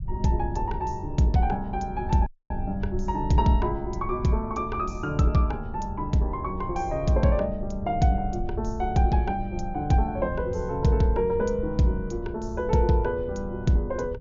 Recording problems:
treble missing; nothing above 7 kHz
rumble; below 90 Hz, SNR 10 dB
dropout; at 2.5 s

